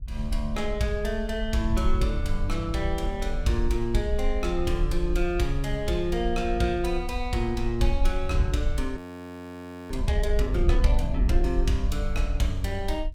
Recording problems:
rumble; below 52 Hz, SNR 3 dB
wind noise; below 78 Hz, SNR 7 dB
audio freezing; at 9 s for 1 s

